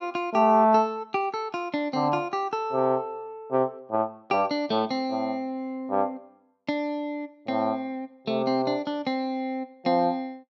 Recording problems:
none

